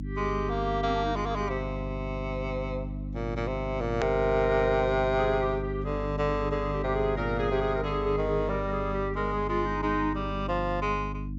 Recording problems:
treble cut off; nothing above 8 kHz
electrical hum; 50 Hz, harmonics up to 300 Hz, SNR 6 dB
hard cut with a click; at 4 s

